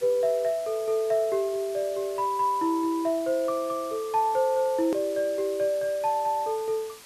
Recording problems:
background hiss; slope 0 dB per octave, SNR 19 dB
edit click; at 5 s

